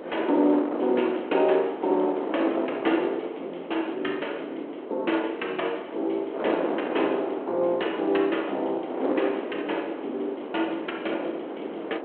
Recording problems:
telephone audio; 260 Hz to 3.3 kHz, G.726
wind on the microphone; below 690 Hz, SNR 6 dB

